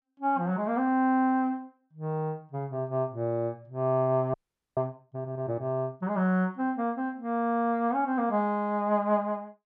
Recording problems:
frozen audio; at 4.5 s

